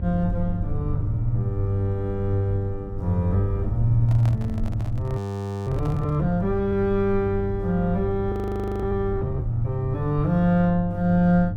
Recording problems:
hum; 50 Hz, harmonics up to 300 Hz, SNR 8 dB
low-frequency rumble; below 90 Hz, SNR 9 dB
microphone handling noise; from 4 to 6 s; peak -9 dB vs average level
frozen audio; at 5 s for 0.5 s and at 8.5 s for 0.5 s

